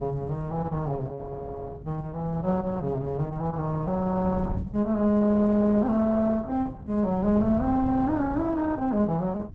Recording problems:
lossy compression; Opus, log-spectral distance 2 dB
wind on the microphone; below 170 Hz, SNR 14 dB

